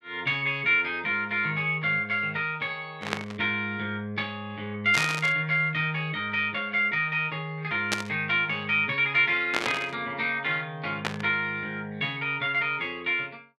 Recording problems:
static burst; 5 times, first at 3 s; peak +4 dB vs average level

